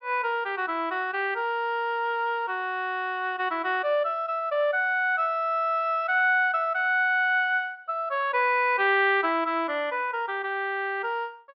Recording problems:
low-pass filter; nothing above 5.3 kHz

